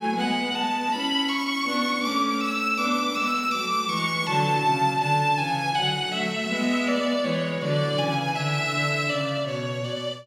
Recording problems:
none

